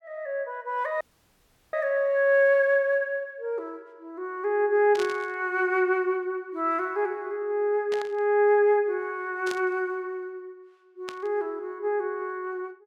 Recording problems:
audio cutting out; at 1 s for 0.5 s
static burst; 4 times, first at 5 s; peak -7 dB vs average level

